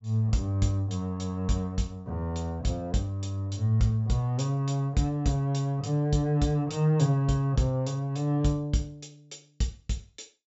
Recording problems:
treble cut off; nothing above 7.7 kHz

